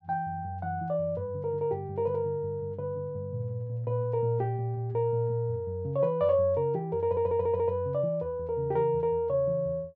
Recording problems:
audio stuttering; at 7 s

